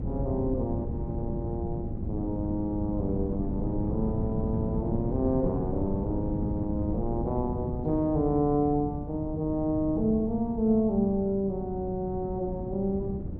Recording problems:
wind on the microphone; below 210 Hz, SNR 5 dB

